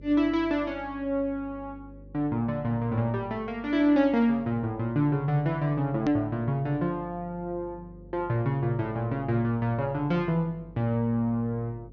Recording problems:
low-pass filter; nothing above 6.6 kHz
hum; 50 Hz, harmonics up to 550 Hz, SNR 21 dB
click at an edit; at 6 s

